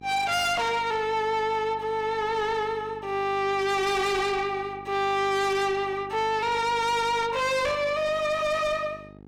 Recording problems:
distorted audio; soft clipping, signal-to-distortion ratio 8 dB
electrical hum; 50 Hz, harmonics up to 1.3 kHz, SNR 21 dB

